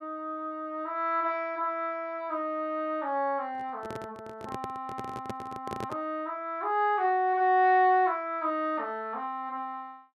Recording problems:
microphone handling noise; from 3.5 to 6 s; peak -4 dB vs average level

